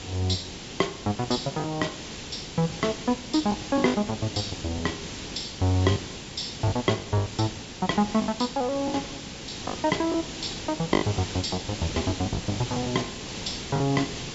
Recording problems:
treble missing; nothing above 8 kHz
background hiss; SNR 8 dB
packet loss; 17% of the sound replaced, filled with the last packet

